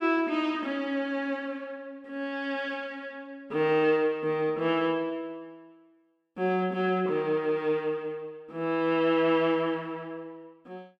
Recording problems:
none

